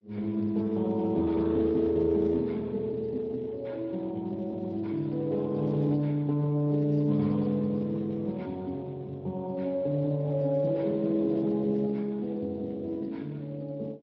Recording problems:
lossy codec; MP2, then Speex, log-spectral distance 2 dB

